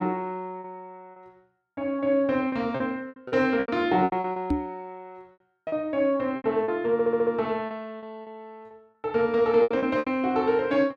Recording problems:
packet loss; 11% of the sound replaced, filled with repeated pitch periods
microphone bump; at 4.5 s; peak +4 dB vs average level
audio stuttering; at 7 s

